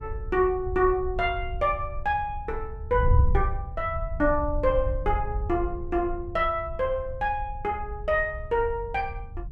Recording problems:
wind noise; below 76 Hz, SNR 6 dB

